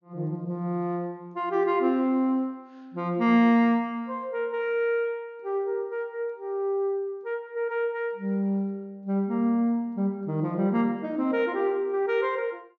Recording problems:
low-pass filter; nothing above 6.8 kHz

